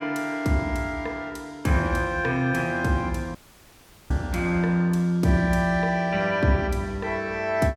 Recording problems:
audio cutting out; at 3.5 s for 0.5 s

